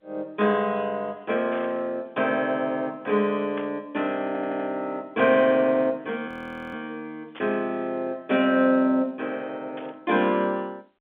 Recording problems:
telephone audio; 240 Hz to 3.5 kHz, G.711
static burst; 4 times, first at 1.5 s; peak -9 dB vs average level
stutter; at 4.5 s
audio freezing; at 6.5 s

